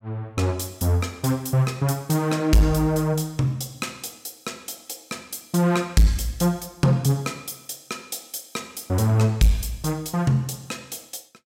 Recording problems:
distortion; soft clipping, signal-to-distortion ratio 10 dB

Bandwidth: 16 kHz